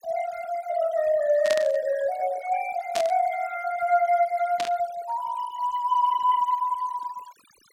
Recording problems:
noise reduction artefacts; signal-to-artefact ratio 19 dB
burst of static; at 1.5 s, at 3 s and at 4.5 s; peak -2 dB vs average level

